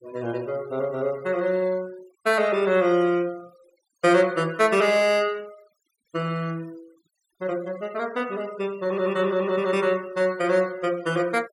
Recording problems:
noise reduction artefacts; signal-to-artefact ratio 23 dB

